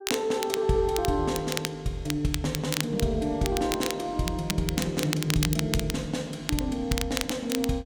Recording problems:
crackling; vinyl, SNR 6 dB

